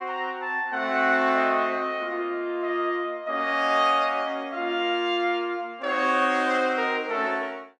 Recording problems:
none

